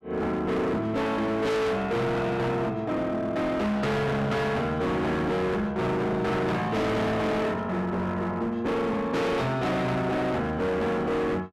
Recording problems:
distortion; hard clipping, signal-to-distortion ratio 6 dB

